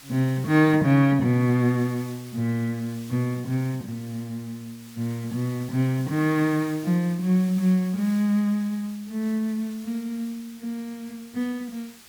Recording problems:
background hiss; SNR 21 dB

